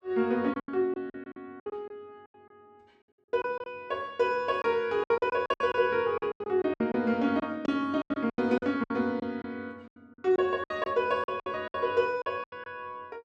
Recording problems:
packet loss; 14% of the sound replaced, filled with silence

